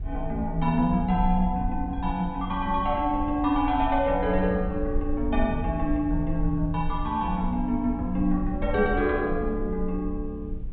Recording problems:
low-pass filter; nothing above 4 kHz
low-frequency rumble; below 68 Hz, SNR 8 dB

